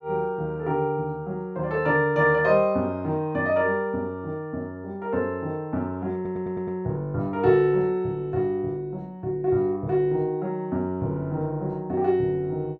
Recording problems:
audio stuttering; at 6 s

